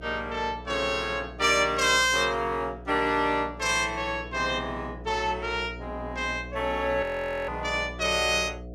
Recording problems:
electrical hum; 60 Hz, harmonics up to 720 Hz, SNR 16 dB
audio freezing; at 7 s

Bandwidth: 15.5 kHz